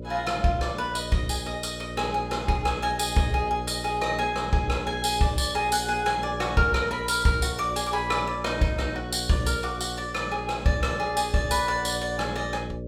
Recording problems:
hum; 60 Hz, harmonics up to 600 Hz, SNR 11 dB

